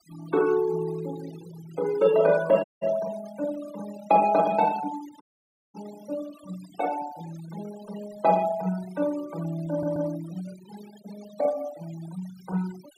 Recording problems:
denoising artefacts; signal-to-artefact ratio 18 dB
audio cutting out; at 2.5 s and at 5 s for 0.5 s
audio stuttering; at 9.5 s

